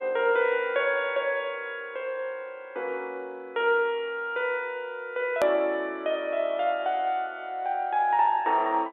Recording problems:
phone line; 280 Hz to 3.8 kHz, G.711
click at an edit; at 5.5 s

